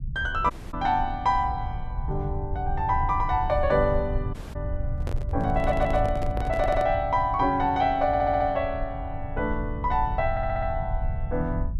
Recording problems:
rumble; below 90 Hz, SNR 7 dB
dropout; at 0.5 s and at 4.5 s
microphone handling noise; from 5 to 7 s; peak -6 dB vs average level
stutter; 4 times, first at 5.5 s

